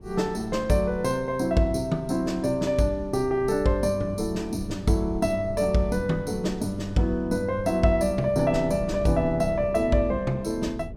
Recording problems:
low-frequency rumble; below 170 Hz, SNR 15 dB

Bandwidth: 16.5 kHz